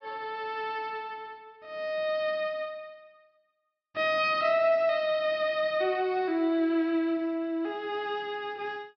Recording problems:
low-pass filter; nothing above 5.5 kHz

